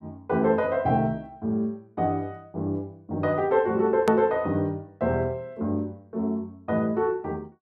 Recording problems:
click at an edit; at 4 s

